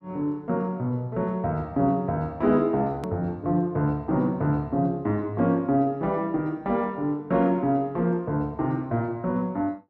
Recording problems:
edit click; at 3 s

